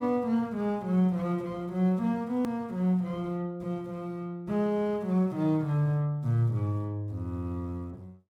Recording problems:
edit click; at 2.5 s

